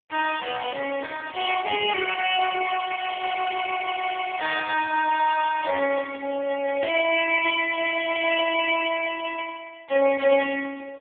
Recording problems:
telephone audio; 320 Hz to 3.3 kHz, AMR-NB

